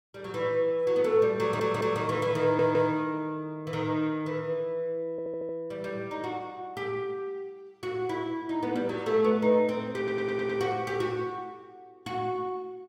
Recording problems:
audio stuttering; 4 times, first at 1.5 s

